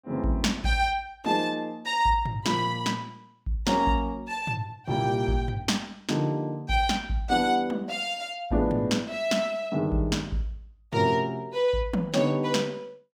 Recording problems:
none

